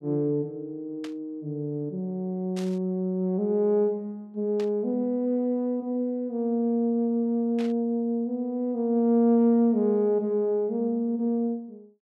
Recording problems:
burst of static; 4 times, first at 1 s; peak -11 dB vs average level

